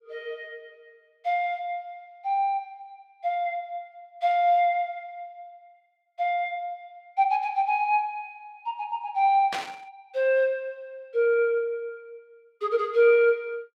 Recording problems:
static burst; at 9.5 s; peak -2 dB vs average level

